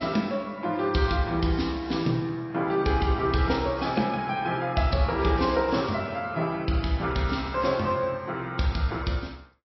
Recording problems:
low-pass filter; nothing above 5.6 kHz
codec artefacts; AAC, log-spectral distance 3 dB

